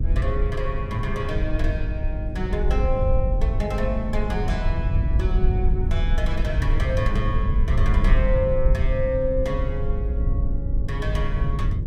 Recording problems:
hum; 50 Hz, harmonics up to 500 Hz, SNR 4 dB
low-frequency rumble; below 74 Hz, SNR -3 dB

